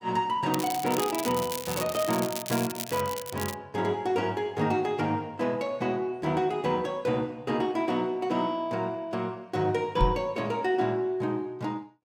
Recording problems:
crackle; from 0.5 to 3.5 s; loose cable, SNR 7 dB
knock on the microphone; at 10 s; peak +5 dB vs average level

